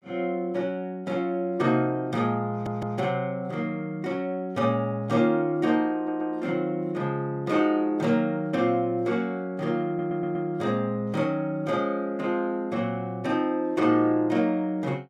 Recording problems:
stutter; at 2.5 s, at 6 s and at 10 s

